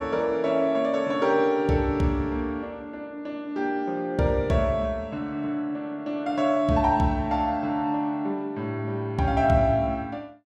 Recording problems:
none

